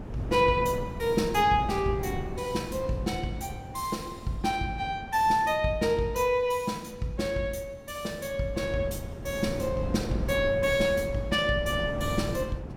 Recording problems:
wind on the microphone; below 310 Hz, SNR 9 dB

